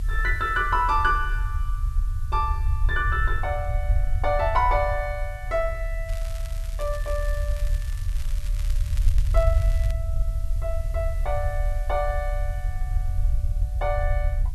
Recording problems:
background hiss; slope 0 dB per octave, SNR 26 dB
rumble; below 68 Hz, strongest tone 36 Hz, SNR 1 dB
crackle; from 6 to 10 s; loose cable, SNR 18 dB

